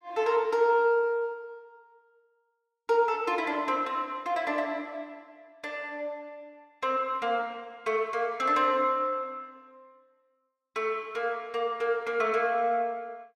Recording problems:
none

